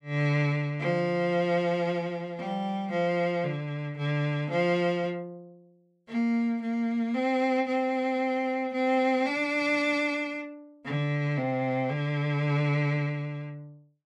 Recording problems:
none

